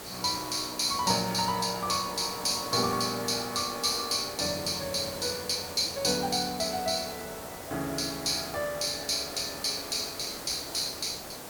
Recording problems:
background hiss; slope -4 dB per octave, SNR 11 dB

